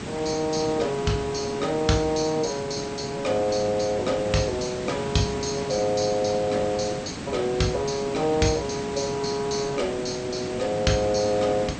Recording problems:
codec artefacts; MP2, log-spectral distance 6 dB
hiss; slope -5 dB per octave, SNR 8 dB

